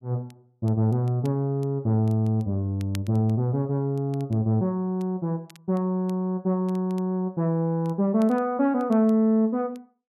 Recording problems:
crackling; vinyl, SNR 30 dB

